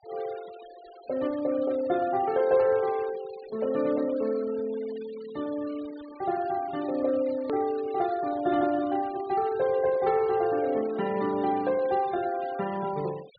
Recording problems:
treble missing; nothing above 4.6 kHz
denoising artefacts; signal-to-artefact ratio 20 dB
hard cut with a click; at 7.5 s

